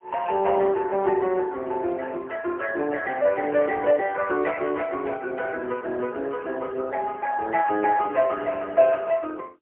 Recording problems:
telephone audio; 220 Hz to 3.1 kHz, AMR-NB, then MP3

